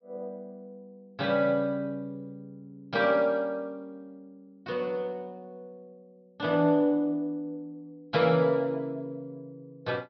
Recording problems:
treble missing; nothing above 5.5 kHz

